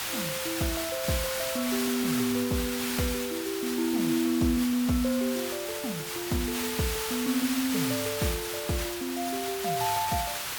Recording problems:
hiss; SNR 3 dB

